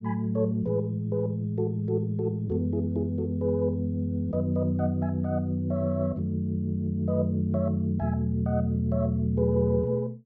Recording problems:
none

